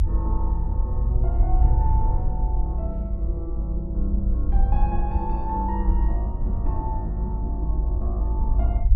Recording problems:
rumble; below 56 Hz, SNR -7 dB

